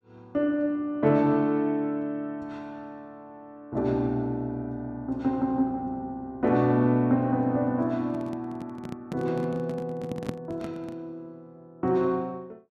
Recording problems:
microphone handling noise; from 8 to 11 s; peak -1 dB vs average level

